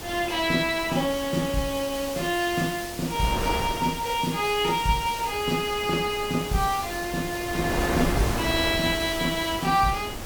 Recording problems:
hiss; slope +1 dB per octave, SNR 11 dB
wind on the microphone; below 860 Hz, SNR 9 dB

